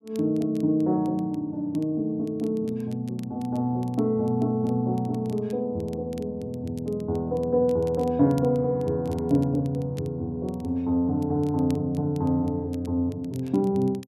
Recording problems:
crackling; vinyl, SNR 29 dB

